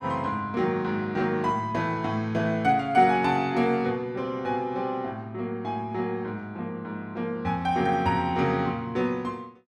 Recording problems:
none

